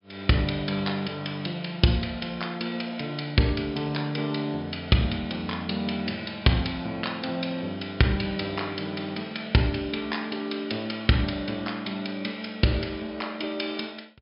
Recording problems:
treble missing; nothing above 5.5 kHz

